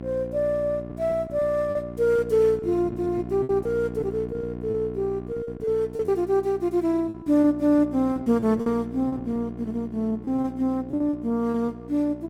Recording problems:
hum; 60 Hz, harmonics up to 1.1 kHz, SNR 12 dB
lost packets; 8% of the sound replaced, filled with repeated pitch periods

